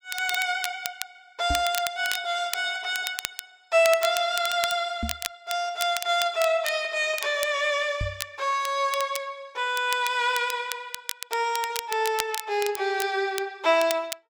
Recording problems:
crackle; vinyl, SNR 9 dB
microphone thump; at 1.5 s, at 5 s and at 8 s; peak -1 dB vs average level

